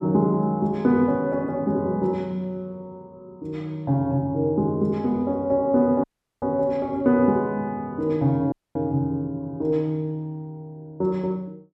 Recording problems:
dropout; at 6 s and at 8.5 s

